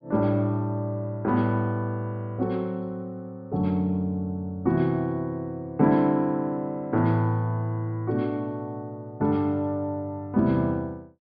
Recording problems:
treble missing; nothing above 5.5 kHz

